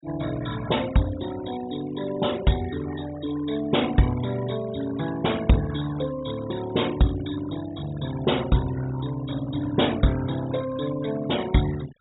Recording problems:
treble missing; nothing above 4 kHz
denoising artefacts; signal-to-artefact ratio 15 dB

